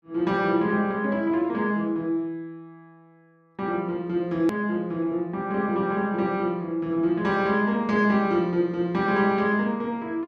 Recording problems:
edit click; at 4.5 s

